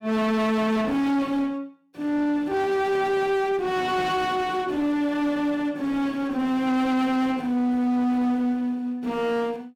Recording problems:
distortion; hard clipping, uneven, signal-to-distortion ratio 6 dB

